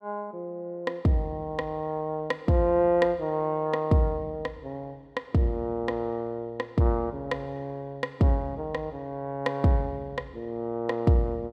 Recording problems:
none

